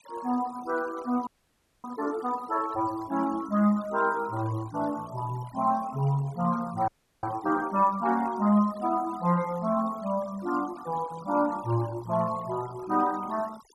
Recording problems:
denoising artefacts; signal-to-artefact ratio 20 dB
frozen audio; at 1.5 s for 0.5 s and at 7 s

